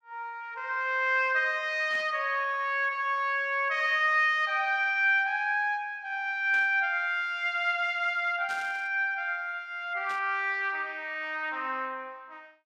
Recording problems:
burst of static; 4 times, first at 2 s; peak -12 dB vs average level

